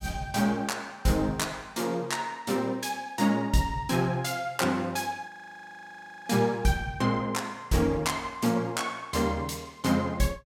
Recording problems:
audio freezing; at 5.5 s for 1 s

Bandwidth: 16.5 kHz